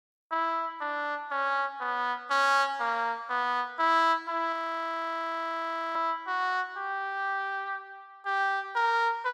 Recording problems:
audio freezing; at 4.5 s for 1.5 s

